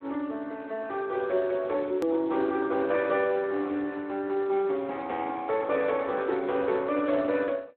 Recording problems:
phone line; 260 Hz to 4 kHz, Speex
hard cut with a click; at 2 s

